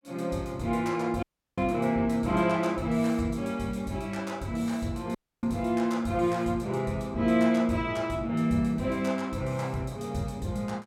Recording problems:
dropout; at 1 s and at 5 s

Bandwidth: 17 kHz